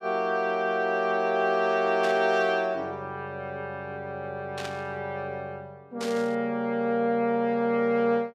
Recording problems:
burst of static; at 2 s, at 4.5 s and at 6 s; peak -6 dB vs average level

